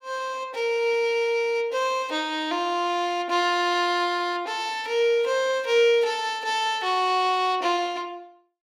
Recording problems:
none

